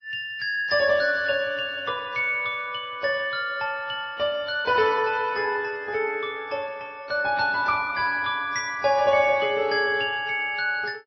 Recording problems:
lossy compression; MP3, then AAC, log-spectral distance 2 dB, nothing above 4.8 kHz

